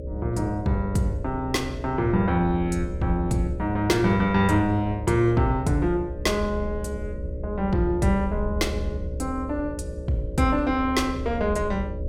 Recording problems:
hum; 60 Hz, harmonics up to 600 Hz, SNR 14 dB
low-frequency rumble; below 74 Hz, strongest tone 70 Hz, SNR 9 dB

